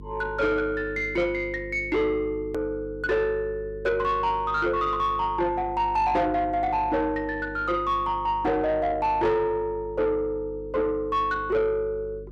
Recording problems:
distortion; soft clipping, signal-to-distortion ratio 10 dB
hum; 50 Hz, harmonics up to 450 Hz, SNR 17 dB
hard cut with a click; at 2.5 s

